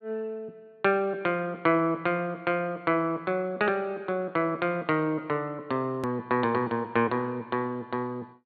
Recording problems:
treble missing; nothing above 4.4 kHz
click at an edit; at 6 s

